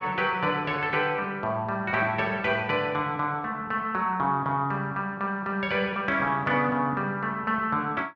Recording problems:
none

